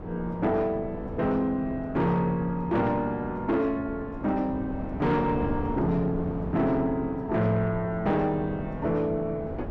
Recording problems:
distortion; soft clipping, signal-to-distortion ratio 11 dB
wind noise; below 410 Hz, SNR 10 dB

